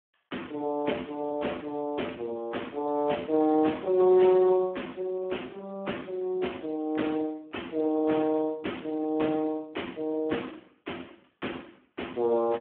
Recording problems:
phone line; 220 Hz to 3.3 kHz, Speex

